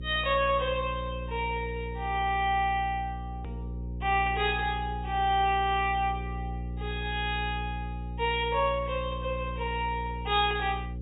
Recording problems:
treble missing; nothing above 4 kHz
hum; 60 Hz, harmonics up to 540 Hz, SNR 8 dB
edit click; at 3.5 s

